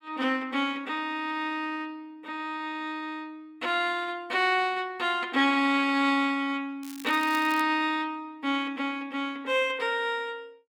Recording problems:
crackling; at 7 s; loose cable, SNR 17 dB

